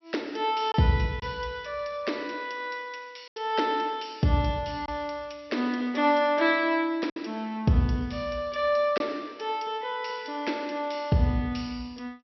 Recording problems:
low-pass filter; nothing above 5.8 kHz
packet loss; 1.8% of the sound replaced, filled with silence

